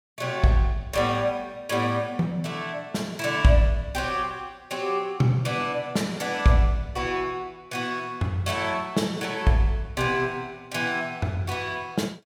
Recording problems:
none

